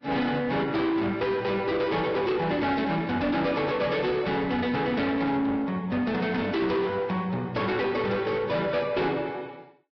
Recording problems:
lossy compression; Vorbis, log-spectral distance 3 dB, nothing above 5.3 kHz
distortion; soft clipping, signal-to-distortion ratio 10 dB

